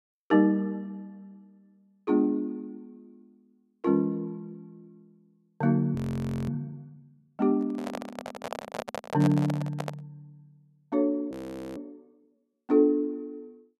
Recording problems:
frozen audio; at 6 s for 0.5 s and at 11 s
microphone handling noise; from 7.5 to 10 s; peak -1 dB vs average level

